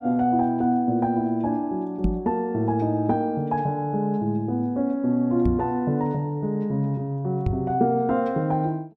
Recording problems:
microphone thump; at 2 s, at 5.5 s and at 7.5 s; peak +3 dB vs average level

